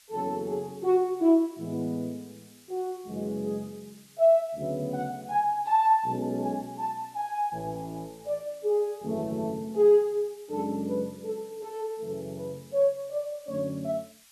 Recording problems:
hiss; slope +4 dB per octave, SNR 26 dB

